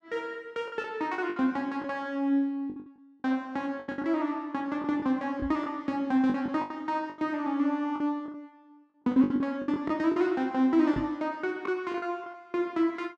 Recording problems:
lost packets; 11% of the sound replaced, filled with the last packet
knock on the microphone; at 5.5 s and at 11 s; peak -2 dB vs average level

